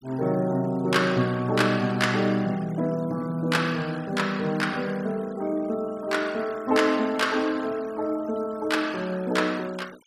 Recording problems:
denoising artefacts; signal-to-artefact ratio 22 dB

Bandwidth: 14.5 kHz